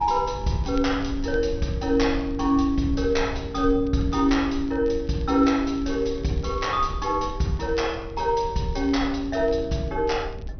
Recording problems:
low-pass filter; nothing above 6.1 kHz
wind on the microphone; below 84 Hz, SNR 12 dB
crackle; vinyl, SNR 29 dB

